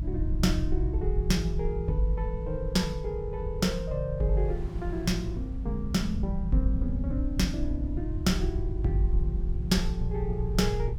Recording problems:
rumble; below 68 Hz, SNR 3 dB
wind on the microphone; below 160 Hz, SNR 21 dB

